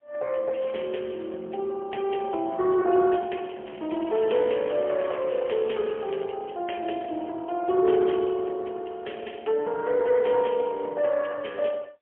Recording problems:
telephone audio; 280 Hz to 3.2 kHz, AMR-NB, then MP3
crackling; at 0.5 s and from 3.5 to 6.5 s; loose cable, SNR 21 dB

